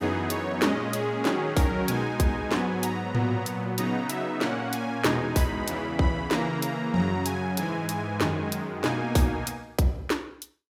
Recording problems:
none

